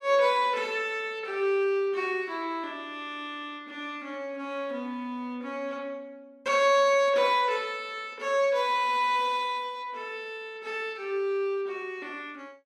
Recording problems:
none

